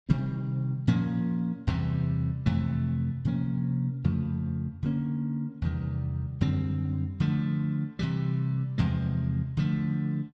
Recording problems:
none

